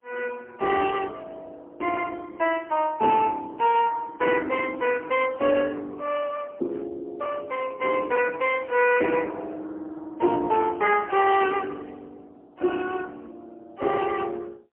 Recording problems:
telephone audio; 260 Hz to 3.1 kHz, AMR-NB, then MP3

